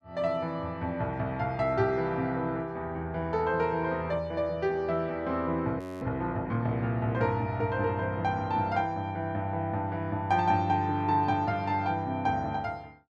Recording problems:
audio freezing; at 6 s

